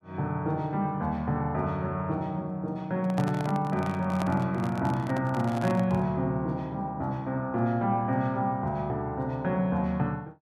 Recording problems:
microphone handling noise; from 3 to 6 s; peak -1 dB vs average level

